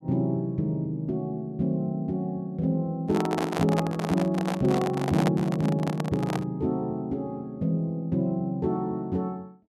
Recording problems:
microphone handling noise; from 3 to 6.5 s; peak +3 dB vs average level

